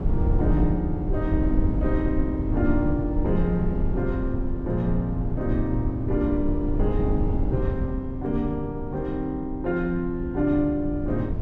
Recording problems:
low-frequency rumble; below 120 Hz, SNR 2 dB

